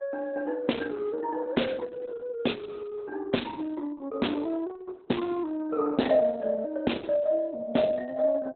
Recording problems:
lossy codec; Opus, log-spectral distance 3 dB, nothing above 4 kHz

